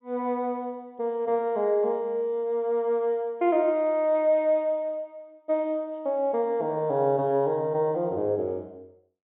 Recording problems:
low-pass filter; nothing above 4 kHz

